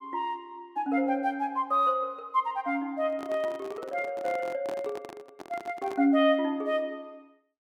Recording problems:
handling noise; from 3 to 6 s; peak -6 dB vs average level

